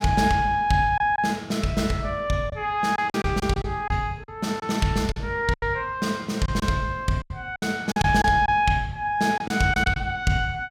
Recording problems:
lost packets; 7% of the sound replaced, filled with silence

